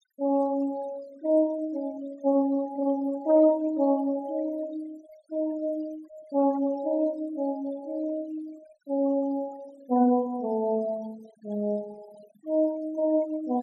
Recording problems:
denoising artefacts; signal-to-artefact ratio 25 dB

